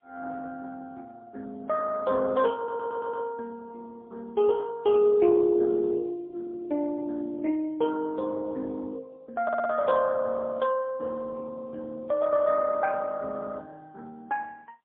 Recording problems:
phone line; 280 Hz to 2.8 kHz, AMR-NB, then MP3
audio stuttering; at 2.5 s and at 9.5 s

